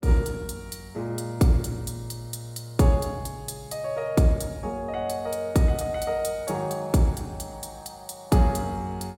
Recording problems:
none

